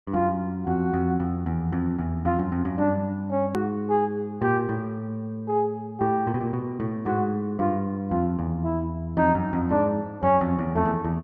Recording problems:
edit click; at 3.5 s

